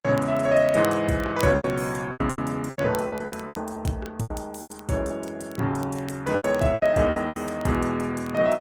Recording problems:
codec artefacts; Opus, log-spectral distance 3 dB
crackle; vinyl, SNR 21 dB
lost packets; 13% of the sound replaced, filled with repeated pitch periods

